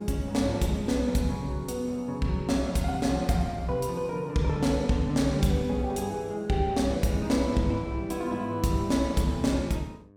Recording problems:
hum; 50 Hz, harmonics up to 1.2 kHz, SNR 27 dB

